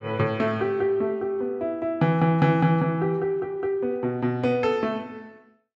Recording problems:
none

